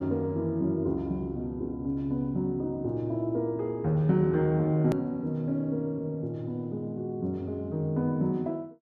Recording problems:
hard cut with a click; at 5 s

